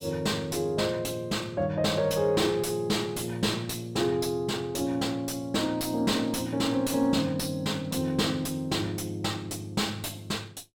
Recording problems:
distortion; soft clipping, signal-to-distortion ratio 10 dB

